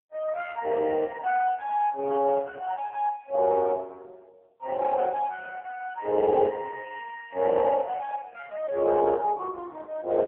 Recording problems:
phone line; 370 Hz to 2.8 kHz, AMR-NB

